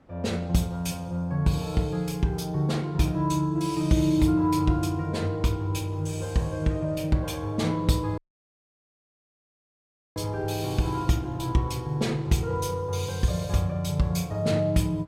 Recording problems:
wind noise; below 630 Hz, SNR 25 dB
dropout; at 8 s for 2 s

